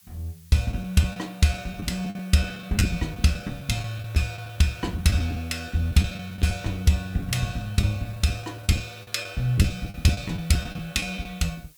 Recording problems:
hiss; slope +3 dB per octave, SNR 27 dB
lost packets; 11% of the sound replaced, filled with the last packet

